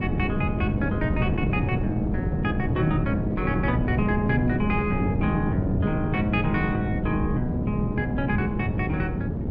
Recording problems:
electrical hum; 60 Hz, harmonics up to 900 Hz, SNR 8 dB
wind noise; below 250 Hz, SNR 0 dB

